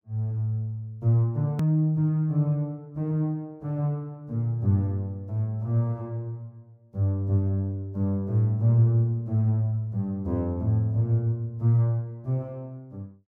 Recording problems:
edit click; at 1.5 s

